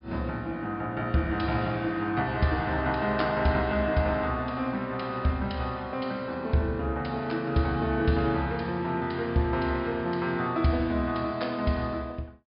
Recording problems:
low-pass filter; nothing above 5.5 kHz

